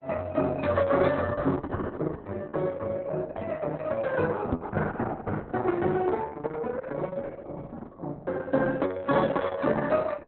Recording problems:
lossy compression; Opus, log-spectral distance 3 dB, nothing above 3.9 kHz
microphone thump; at 4.5 s; peak +6 dB vs average level

